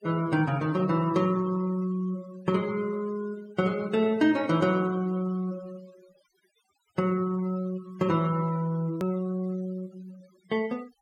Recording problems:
noise reduction artefacts; signal-to-artefact ratio 22 dB
hard cut with a click; at 9 s

